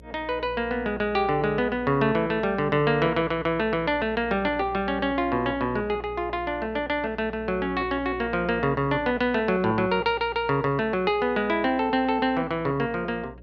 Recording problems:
hum; 60 Hz, harmonics up to 600 Hz, SNR 20 dB

